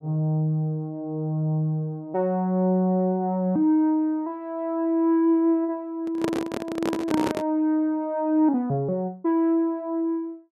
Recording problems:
microphone handling noise; from 6 to 7.5 s; peak +2 dB vs average level

